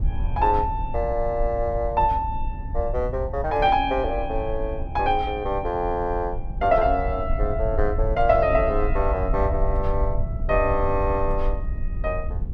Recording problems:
rumble; below 68 Hz, SNR 6 dB

